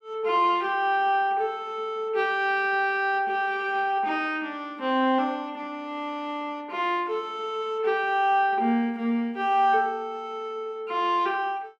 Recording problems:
none

